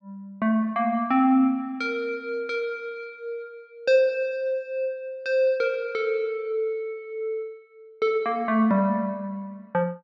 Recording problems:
none

